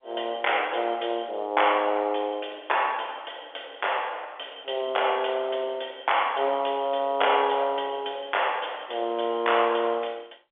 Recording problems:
phone line; 320 Hz to 3.5 kHz, G.711

